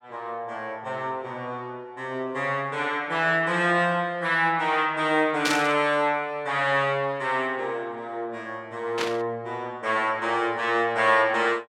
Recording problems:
static burst; at 5.5 s and at 9 s; peak +3 dB vs average level

